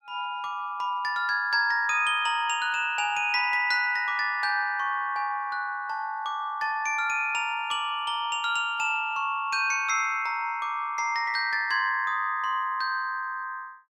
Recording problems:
none

